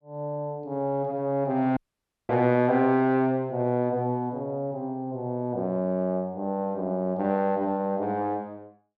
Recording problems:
dropout; at 2 s for 0.5 s

